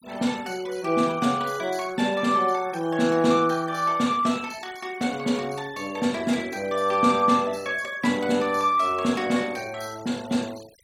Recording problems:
denoising artefacts; signal-to-artefact ratio 21 dB

